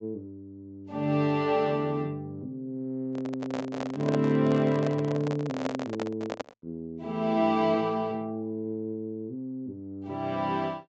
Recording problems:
treble cut off; nothing above 8 kHz
handling noise; from 3 to 6.5 s; peak +1 dB vs average level

